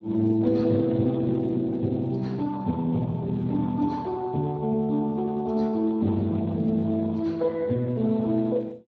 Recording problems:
lossy compression; Speex, log-spectral distance 2 dB

